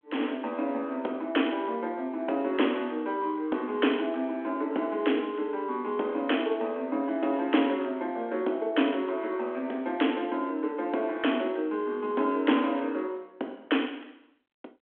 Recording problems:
phone line; 220 Hz to 3.4 kHz, G.726

